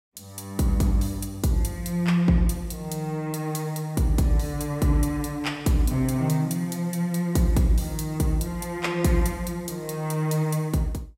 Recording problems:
none

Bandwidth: 16 kHz